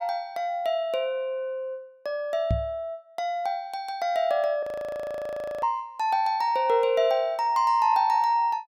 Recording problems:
microphone thump; at 2.5 s; peak +3 dB vs average level
audio freezing; at 4.5 s for 1 s

